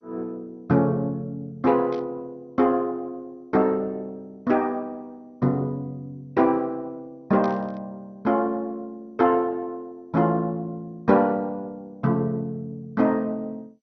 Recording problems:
codec artefacts; MP2, log-spectral distance 2 dB, nothing above 5.8 kHz
burst of static; at 2 s and at 7.5 s; peak -14 dB vs average level

